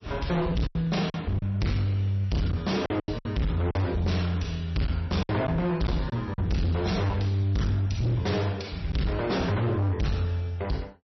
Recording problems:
codec artefacts; MP3, log-spectral distance 2 dB, nothing above 5.8 kHz
distorted audio; hard clipping, signal-to-distortion ratio 6 dB
lost packets; 5% of the sound replaced, filled with silence

